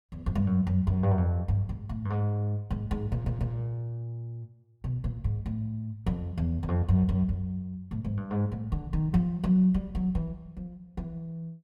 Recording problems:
audio stuttering; at 3 s

